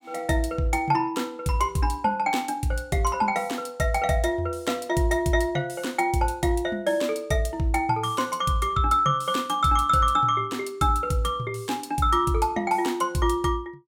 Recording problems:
none

